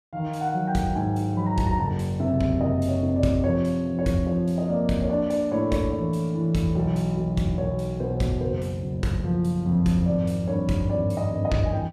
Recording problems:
none

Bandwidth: 14.5 kHz